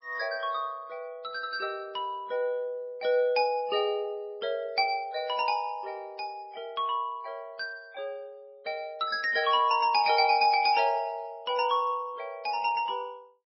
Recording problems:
codec artefacts; MP3, log-spectral distance 2 dB, nothing above 4.6 kHz

